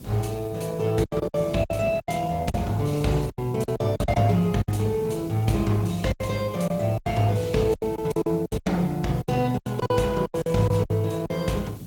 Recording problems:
codec artefacts; Opus, log-spectral distance 4 dB, nothing above 17 kHz
background hiss; slope +1 dB per octave, SNR 25 dB
wind on the microphone; below 240 Hz, SNR 17 dB
lost packets; 14% of the sound replaced, filled with silence

